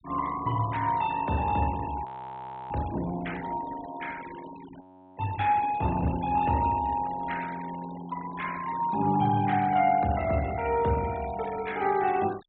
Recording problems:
treble cut off; nothing above 4 kHz
denoising artefacts; signal-to-artefact ratio 18 dB
frozen audio; at 2 s for 0.5 s and at 5 s

